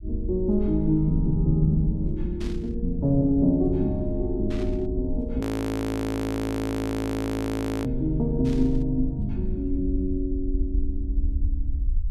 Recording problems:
rumble; below 66 Hz, SNR 6 dB
burst of static; at 2.5 s, at 4.5 s and at 8.5 s; peak -13 dB vs average level
frozen audio; at 5.5 s for 2.5 s

